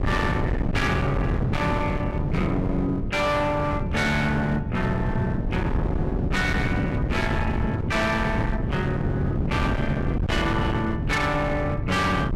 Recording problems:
distorted audio; hard clipping, signal-to-distortion ratio 8 dB
wind noise; below 270 Hz, SNR 2 dB

